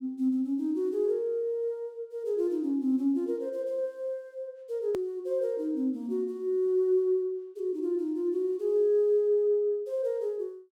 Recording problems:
hard cut with a click; at 5 s

